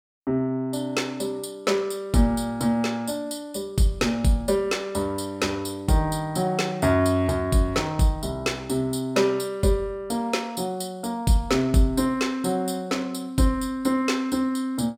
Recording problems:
none

